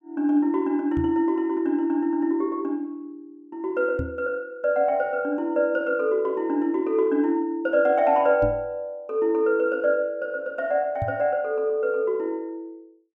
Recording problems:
microphone bump; 4 times, first at 1 s; peak -2 dB vs average level

